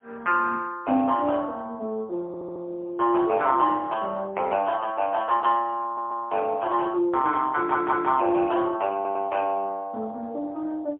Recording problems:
telephone audio; 260 Hz to 3.2 kHz, AMR-NB, then MP3
audio stuttering; 4 times, first at 2.5 s

